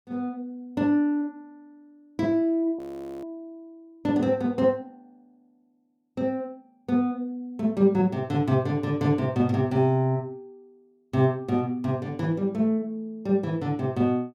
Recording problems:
frozen audio; at 3 s

